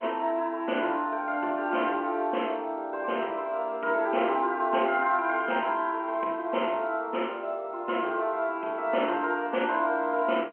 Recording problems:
phone line; 240 Hz to 3.2 kHz, G.711

